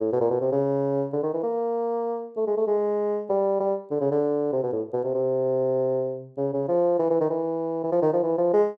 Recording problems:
none

